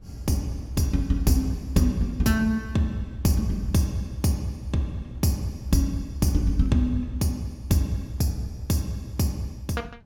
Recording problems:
wind noise; below 120 Hz, SNR 20 dB

